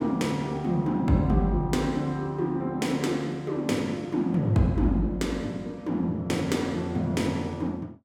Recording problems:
none

